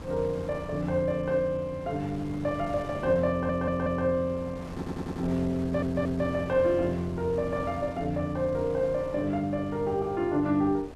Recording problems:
wind on the microphone; below 620 Hz, SNR 15 dB
stutter; at 3.5 s, at 4.5 s and at 5.5 s

